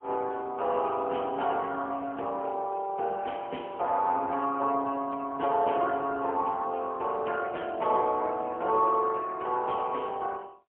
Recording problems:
phone line; 280 Hz to 3.1 kHz, AMR-NB, then MP3

